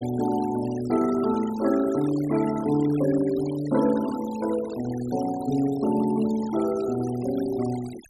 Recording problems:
noise reduction artefacts; signal-to-artefact ratio 17 dB

